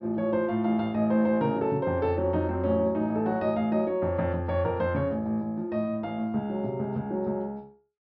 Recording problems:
treble missing; nothing above 5.5 kHz

